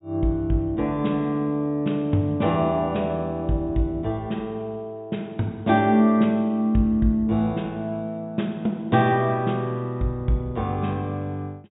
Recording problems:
treble missing; nothing above 4 kHz

